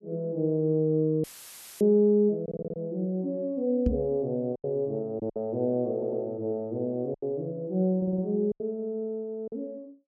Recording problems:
packet loss; 4% of the sound replaced, filled with silence
audio cutting out; at 1 s for 0.5 s; filled with static
audio stuttering; at 2.5 s, at 6 s and at 8 s
knock on the microphone; at 4 s; peak +4 dB vs average level

